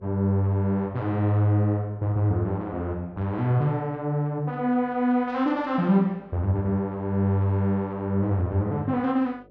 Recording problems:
hum; 50 Hz, harmonics up to 600 Hz, SNR 30 dB

